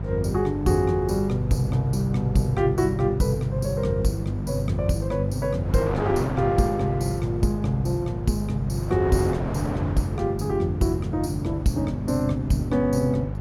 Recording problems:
hum; 50 Hz, harmonics up to 600 Hz, SNR 7 dB
wind noise; below 910 Hz, SNR 13 dB

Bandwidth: 17 kHz